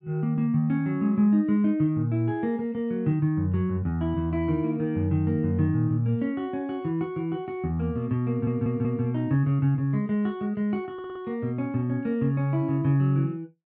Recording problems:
audio stuttering; at 8.5 s and at 11 s

